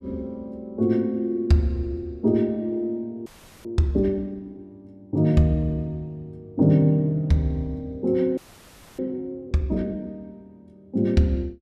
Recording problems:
audio freezing; at 3.5 s and at 8.5 s for 0.5 s

